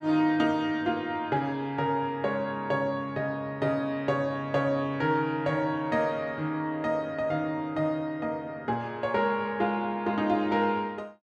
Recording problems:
none

